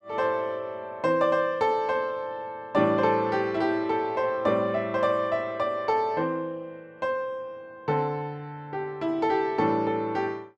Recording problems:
none

